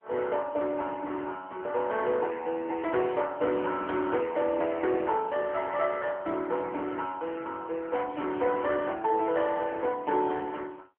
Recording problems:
telephone audio; 260 Hz to 3.3 kHz, AMR-NB

